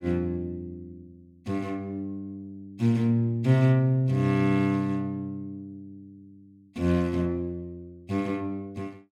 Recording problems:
none

